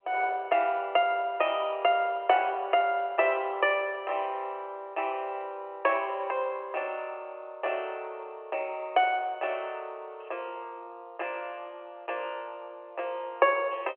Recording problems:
telephone audio; 340 Hz to 3.2 kHz, G.711

